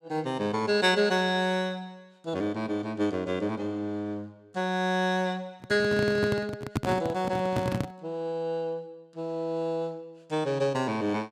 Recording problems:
microphone handling noise; from 5.5 to 8 s; peak +4 dB vs average level

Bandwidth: 15.5 kHz